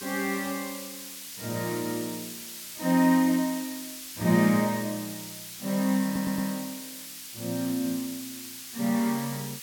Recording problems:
hiss; slope +4 dB per octave, SNR 10 dB
audio stuttering; at 6 s

